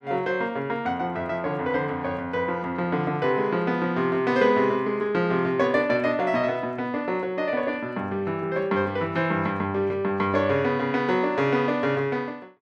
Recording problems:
none

